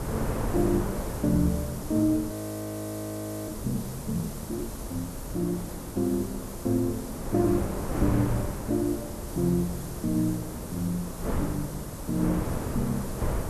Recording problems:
background hiss; slope +2 dB per octave, SNR 13 dB
wind on the microphone; below 510 Hz, SNR 5 dB
audio freezing; at 2.5 s for 1 s

